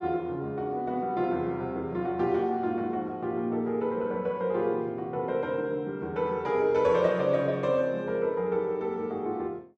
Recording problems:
none

